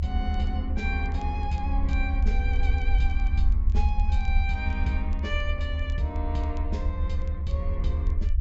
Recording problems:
treble missing; nothing above 8 kHz
low-frequency rumble; below 74 Hz, SNR -6 dB
crackling; vinyl, SNR 28 dB

